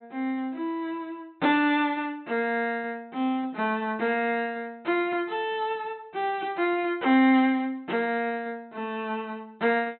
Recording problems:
treble cut off; nothing above 4.1 kHz

